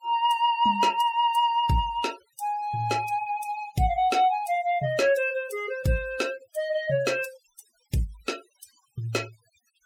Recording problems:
denoising artefacts; signal-to-artefact ratio 21 dB

